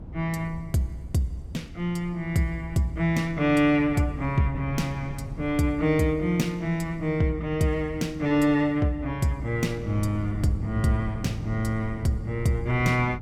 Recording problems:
wind on the microphone; below 160 Hz, SNR 13 dB

